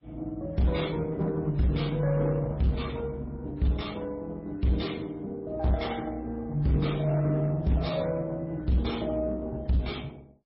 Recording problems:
codec artefacts; Opus, then MP3, log-spectral distance 3 dB, nothing above 5.2 kHz
distortion; hard clipping, signal-to-distortion ratio 11 dB

